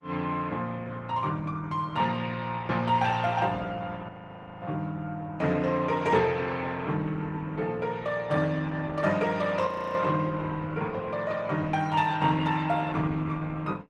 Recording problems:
codec artefacts; Opus, log-spectral distance 3 dB, nothing above 14.6 kHz
audio freezing; at 4 s for 0.5 s and at 9.5 s

